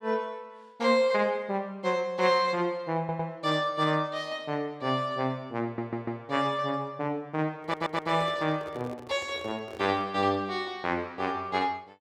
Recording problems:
audio stuttering; at 3 s, at 5.5 s and at 7.5 s
microphone handling noise; from 7.5 to 10 s; peak -10 dB vs average level

